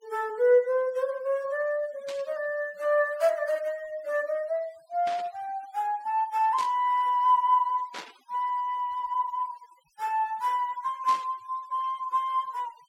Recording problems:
noise reduction artefacts; signal-to-artefact ratio 26 dB
burst of static; 5 times, first at 2 s; peak -8 dB vs average level

